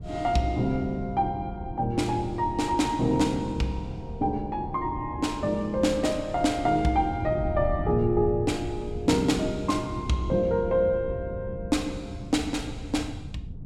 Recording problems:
wind noise; below 140 Hz, SNR 11 dB

